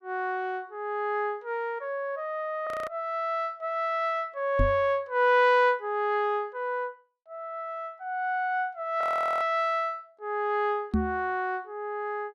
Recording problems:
audio freezing; at 2.5 s and at 9 s
microphone thump; at 4.5 s and at 11 s; peak +5 dB vs average level

